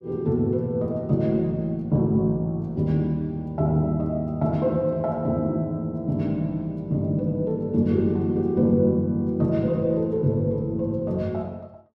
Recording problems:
none

